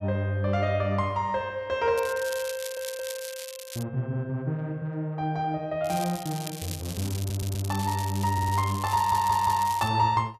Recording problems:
crackling; from 2 to 4 s and from 6 to 10 s; loose cable, SNR 11 dB
stutter; 4 times, first at 2.5 s

